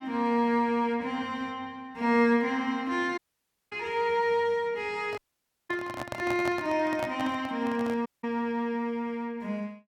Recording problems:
audio cutting out; at 3 s for 0.5 s, at 5 s for 0.5 s and at 8 s
microphone handling noise; from 5 to 8 s; peak -2 dB vs average level

